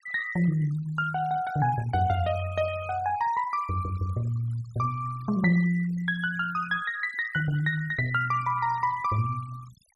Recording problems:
denoising artefacts; signal-to-artefact ratio 19 dB

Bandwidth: 12 kHz